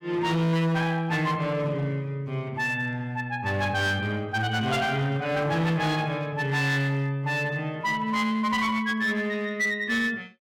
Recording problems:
distortion; hard clipping, signal-to-distortion ratio 11 dB

